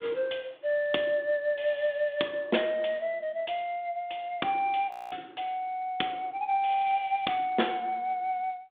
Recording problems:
telephone audio; 240 Hz to 3.6 kHz, G.726
frozen audio; at 5 s

